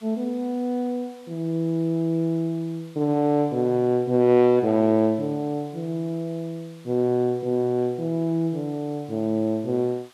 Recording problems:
background hiss; SNR 29 dB

